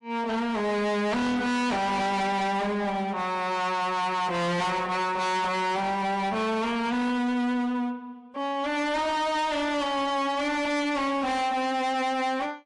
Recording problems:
lossy compression; MP3, log-spectral distance 2 dB, nothing above 11 kHz
distortion; hard clipping, signal-to-distortion ratio 6 dB

